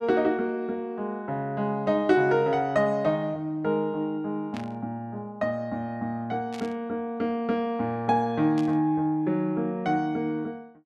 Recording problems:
static burst; at 4.5 s, at 6.5 s and at 8.5 s; peak -9 dB vs average level

